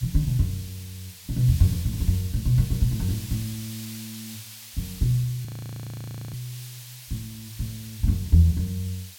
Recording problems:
background hiss; slope +4 dB per octave, SNR 15 dB
frozen audio; at 5.5 s for 1 s

